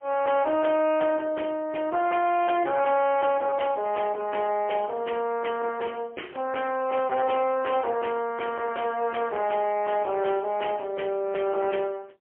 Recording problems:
phone line; 280 Hz to 3.3 kHz, AMR-NB, then MP3
distorted audio; soft clipping, signal-to-distortion ratio 12 dB

